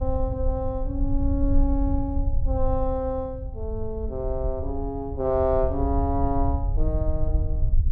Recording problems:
low-frequency rumble; below 72 Hz, SNR 0 dB

